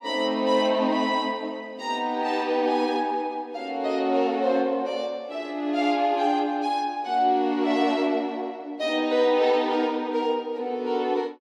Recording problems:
none

